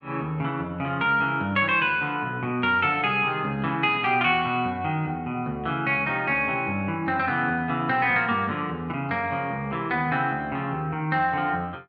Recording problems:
none

